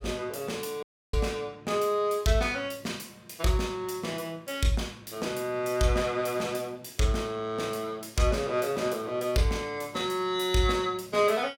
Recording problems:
audio cutting out; at 1 s

